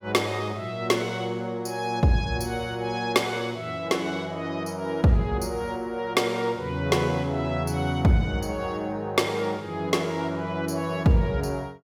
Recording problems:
none

